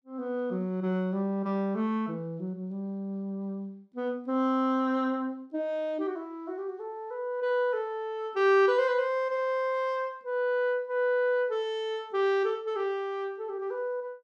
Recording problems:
none

